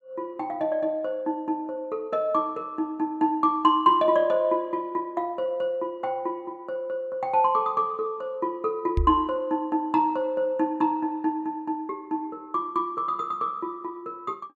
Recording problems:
microphone bump; at 9 s; peak +4 dB vs average level

